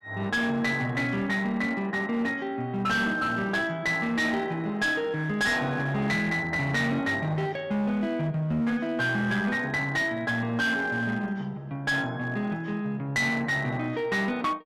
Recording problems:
distorted audio; hard clipping, uneven, signal-to-distortion ratio 10 dB

